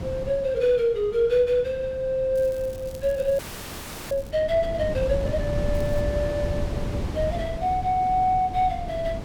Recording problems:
wind on the microphone; below 220 Hz, SNR 8 dB
crackle; from 2.5 to 4.5 s and at 5.5 s; loose cable, SNR 26 dB
frozen audio; at 3.5 s for 0.5 s

